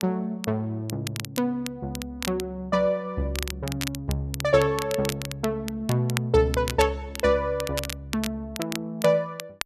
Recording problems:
crackle; vinyl, SNR 10 dB

